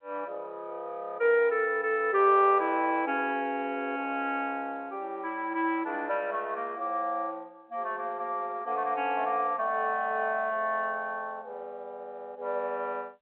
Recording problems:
phone line; 340 Hz to 3.3 kHz, G.711

